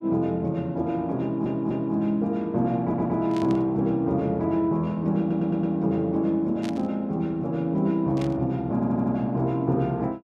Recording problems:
stutter; 4 times, first at 1 s
burst of static; at 3.5 s, at 6.5 s and at 8 s; peak -10 dB vs average level

